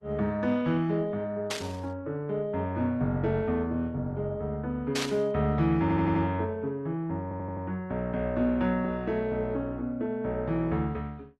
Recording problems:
codec artefacts; Opus, log-spectral distance 2 dB
static burst; at 1.5 s and at 5 s; peak +2 dB vs average level
audio stuttering; at 6 s and at 7 s

